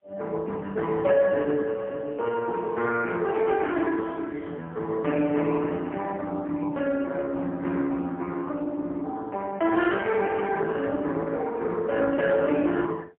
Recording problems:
telephone audio; 220 Hz to 3.4 kHz, AMR-NB, then MP3

